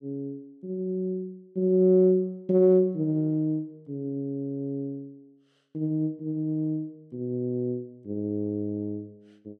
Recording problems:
none

